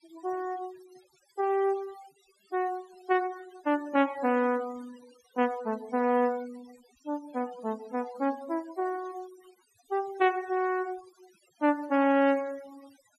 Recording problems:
denoising artefacts; signal-to-artefact ratio 22 dB

